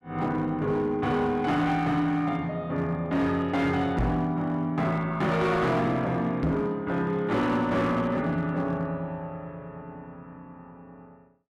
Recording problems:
distortion; hard clipping, signal-to-distortion ratio 12 dB
knock on the microphone; at 4 s and at 6.5 s; peak +3 dB vs average level

